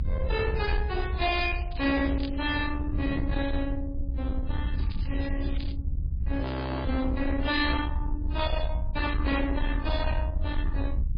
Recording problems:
lossy codec; AAC, then MP3, log-spectral distance 3 dB, nothing above 4.1 kHz
distorted audio; soft clipping, signal-to-distortion ratio 11 dB
low-frequency rumble; below 74 Hz, SNR 2 dB
wind on the microphone; below 130 Hz, SNR 7 dB
crackle; from 1 to 2.5 s and at 5 s; loose cable, SNR 17 dB
audio freezing; at 6.5 s

